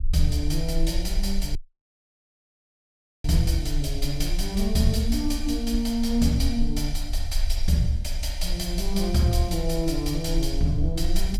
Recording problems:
rumble; below 46 Hz, strongest tone 22 Hz, SNR 5 dB
dropout; at 1.5 s for 1.5 s

